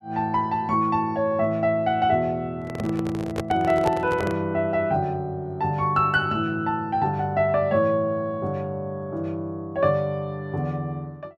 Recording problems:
microphone handling noise; from 2.5 to 4.5 s; peak +1 dB vs average level

